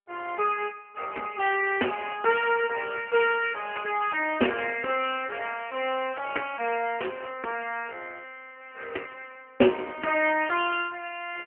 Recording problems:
phone line; 280 Hz to 3.1 kHz, AMR-NB

